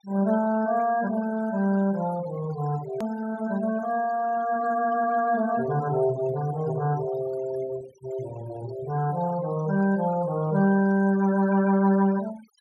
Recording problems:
noise reduction artefacts; signal-to-artefact ratio 18 dB
click at an edit; at 3 s

